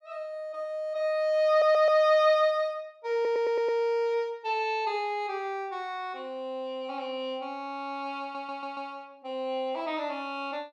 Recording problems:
audio stuttering; at 1.5 s, at 3 s and at 8 s

